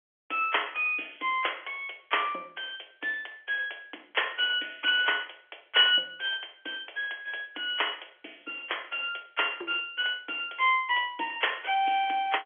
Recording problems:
telephone audio; 280 Hz to 3.4 kHz, G.711

